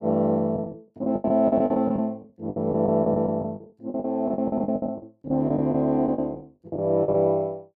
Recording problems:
lost packets; 19% of the sound replaced, filled with the last packet

